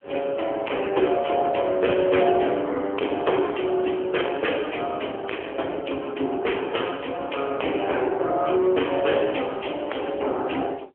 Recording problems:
telephone audio; 280 Hz to 3.3 kHz, AMR-NB
distortion; hard clipping, signal-to-distortion ratio 11 dB

